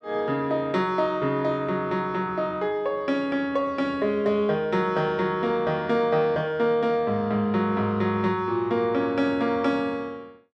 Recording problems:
none

